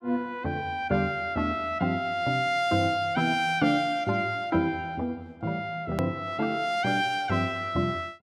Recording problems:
hard cut with a click; at 6 s

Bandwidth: 14.5 kHz